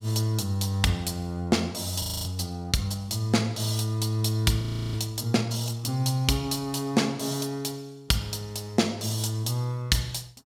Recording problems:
audio freezing; at 2 s and at 4.5 s

